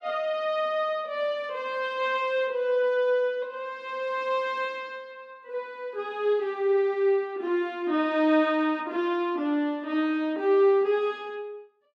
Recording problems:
none

